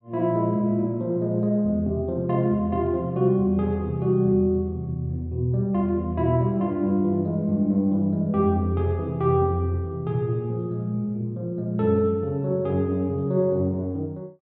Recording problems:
none

